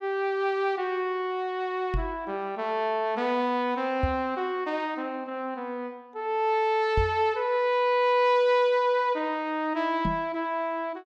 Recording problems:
microphone bump; 4 times, first at 2 s; peak +3 dB vs average level

